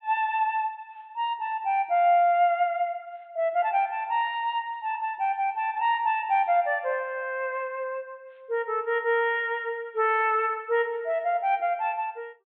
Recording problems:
low-pass filter; nothing above 4 kHz

